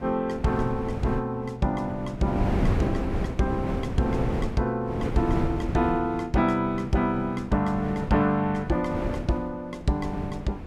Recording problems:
wind on the microphone; below 300 Hz, SNR 5 dB

